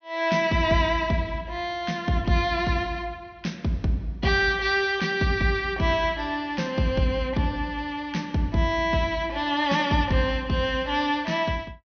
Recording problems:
treble cut off; nothing above 6.4 kHz

